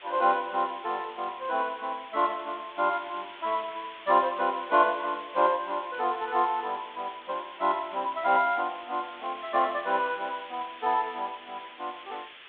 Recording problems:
telephone audio; 260 Hz to 3.9 kHz, G.726
hiss; SNR 17 dB

